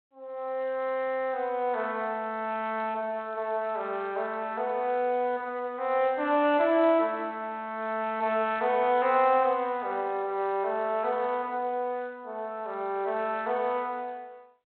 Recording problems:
telephone audio; 260 Hz to 3.5 kHz, G.726

